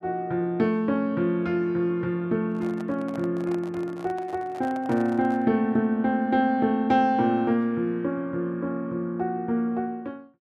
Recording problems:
handling noise; from 2.5 to 5.5 s; peak -10 dB vs average level

